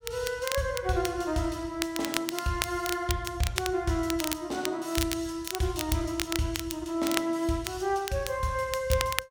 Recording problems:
crackle; vinyl, SNR 5 dB

